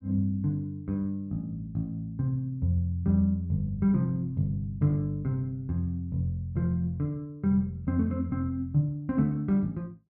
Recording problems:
none

